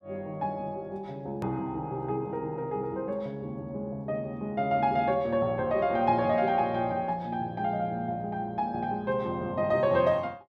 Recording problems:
click at an edit; at 1.5 s

